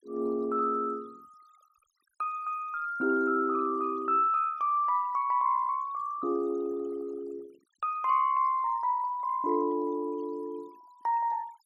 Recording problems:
denoising artefacts; signal-to-artefact ratio 27 dB

